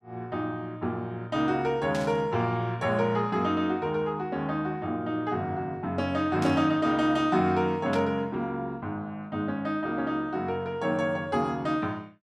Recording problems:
static burst; at 2 s, at 6.5 s and at 8 s; peak -6 dB vs average level

